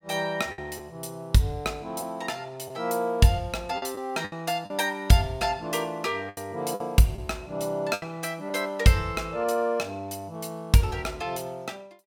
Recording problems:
lost packets; 4% of the sound replaced, filled with the last packet

